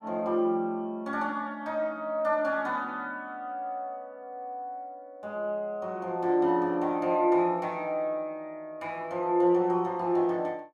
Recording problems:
none

